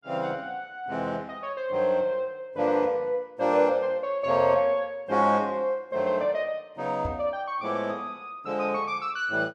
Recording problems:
knock on the microphone; at 7 s; peak -3 dB vs average level

